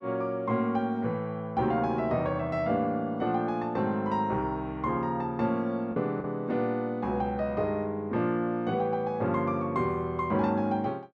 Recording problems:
packet loss; 0.7% of the sound replaced, filled with the last packet

